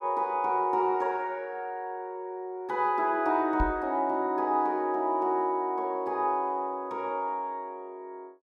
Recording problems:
microphone thump; at 3.5 s; peak +1 dB vs average level

